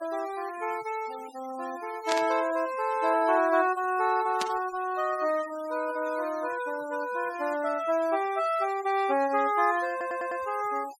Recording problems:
noise reduction artefacts; signal-to-artefact ratio 18 dB
burst of static; at 2 s and at 4.5 s; peak 0 dB vs average level
audio stuttering; at 10 s

